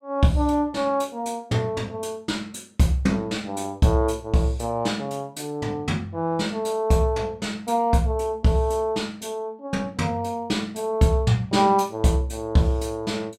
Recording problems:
none

